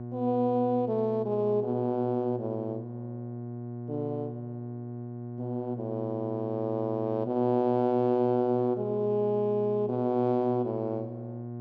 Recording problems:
mains hum; 60 Hz, harmonics up to 720 Hz, SNR 10 dB

